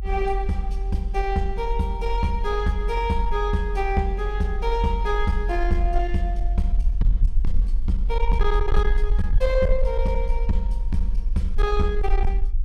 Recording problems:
distortion; soft clipping, signal-to-distortion ratio 12 dB
low-frequency rumble; below 44 Hz, SNR 0 dB

